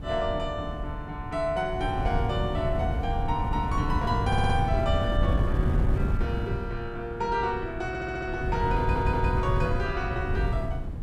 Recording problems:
wind on the microphone; below 140 Hz, SNR 0 dB
stutter; at 4.5 s, at 8 s and at 9 s

